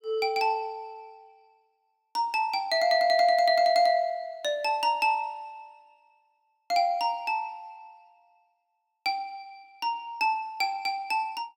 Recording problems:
none

